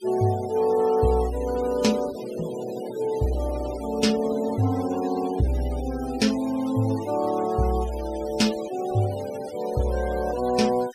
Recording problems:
denoising artefacts; signal-to-artefact ratio 17 dB

